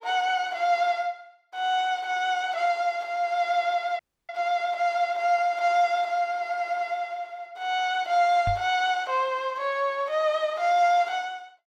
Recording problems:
frozen audio; at 4 s
microphone bump; at 8.5 s; peak -2 dB vs average level

